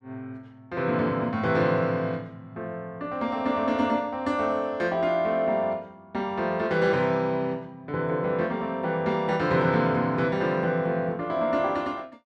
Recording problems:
none

